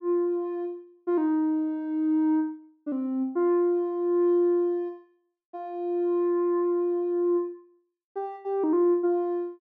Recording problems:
none

